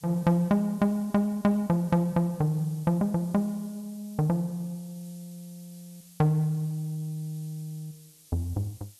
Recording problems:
hiss; SNR 24 dB

